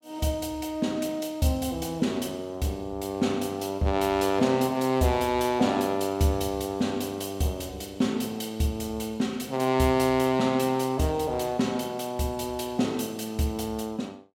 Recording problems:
none

